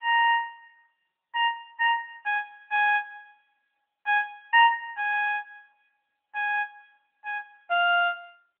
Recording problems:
phone line; 970 Hz to 2.1 kHz, AMR-NB

